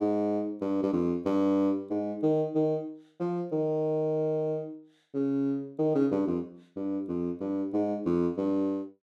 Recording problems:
none

